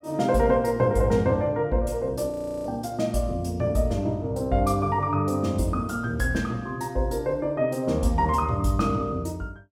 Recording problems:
audio freezing; at 2.5 s

